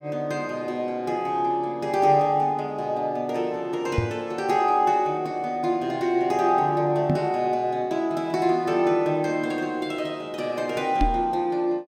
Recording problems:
microphone bump; at 4 s, at 7 s and at 11 s; peak +4 dB vs average level

